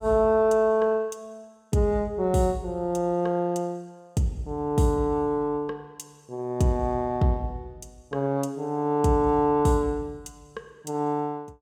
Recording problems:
none

